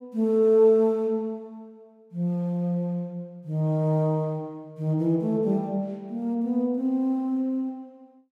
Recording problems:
none

